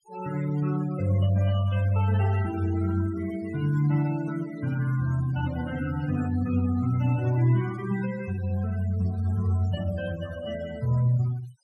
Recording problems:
noise reduction artefacts; signal-to-artefact ratio 17 dB

